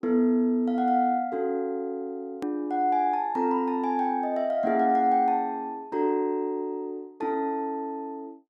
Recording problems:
edit click; at 2.5 s

